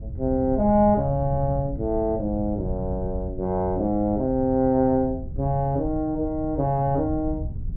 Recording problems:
wind on the microphone; below 110 Hz, SNR 10 dB

